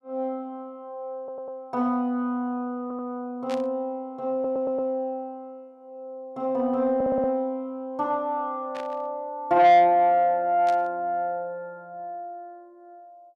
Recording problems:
distorted audio; soft clipping, signal-to-distortion ratio 12 dB
audio stuttering; 4 times, first at 1 s
burst of static; at 3.5 s, at 8.5 s and at 11 s; peak -10 dB vs average level

